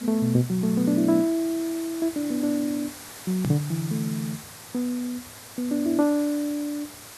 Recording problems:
background hiss; slope -1 dB per octave, SNR 14 dB
edit click; at 3.5 s

